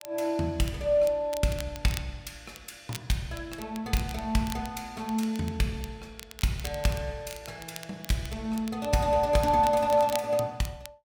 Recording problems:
crackle; vinyl, SNR 16 dB

